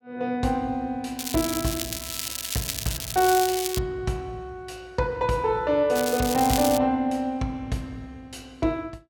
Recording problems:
crackle; from 1 to 4 s and at 6 s; loose cable, SNR 5 dB

